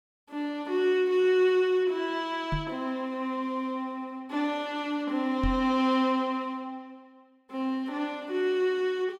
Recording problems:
microphone bump; at 2.5 s and at 5.5 s; peak 0 dB vs average level

